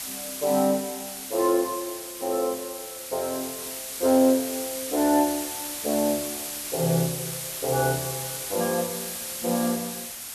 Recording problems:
background hiss; slope +1 dB per octave, SNR 6 dB

